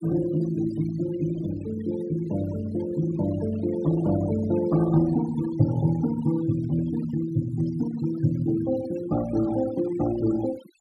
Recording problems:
denoising artefacts; signal-to-artefact ratio 15 dB

